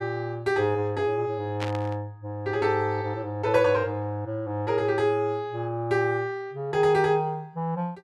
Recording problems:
static burst; at 1.5 s; peak -3 dB vs average level

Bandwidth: 13.5 kHz